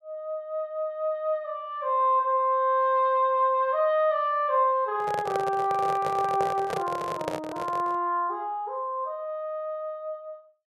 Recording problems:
handling noise; from 5 to 8 s; peak 0 dB vs average level

